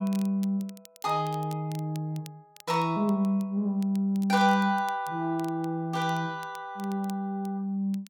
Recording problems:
crackling; vinyl, SNR 24 dB

